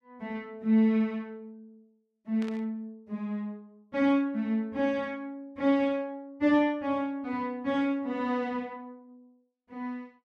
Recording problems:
static burst; at 2.5 s; peak -13 dB vs average level

